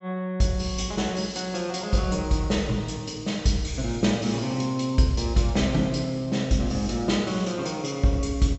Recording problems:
treble missing; nothing above 7.8 kHz

